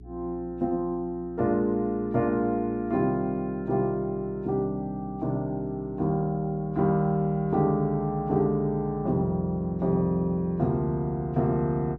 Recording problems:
hum; 60 Hz, harmonics up to 420 Hz, SNR 20 dB

